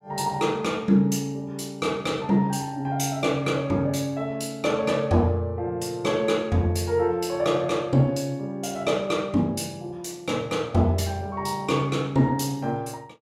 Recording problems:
none

